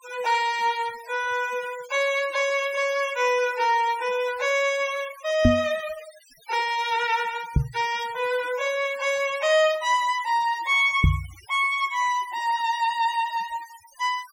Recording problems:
denoising artefacts; signal-to-artefact ratio 18 dB
knock on the microphone; at 5.5 s, at 7.5 s and at 11 s; peak +8 dB vs average level

